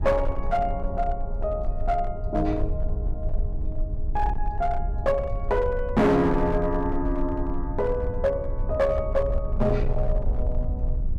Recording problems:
distortion; hard clipping, signal-to-distortion ratio 11 dB
low-frequency rumble; below 64 Hz, strongest tone 22 Hz, SNR 5 dB

